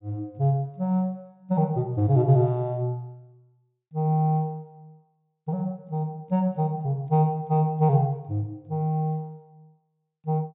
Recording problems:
low-pass filter; nothing above 4 kHz

